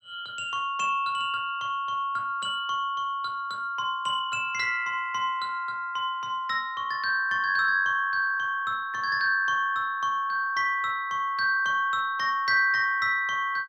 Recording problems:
none

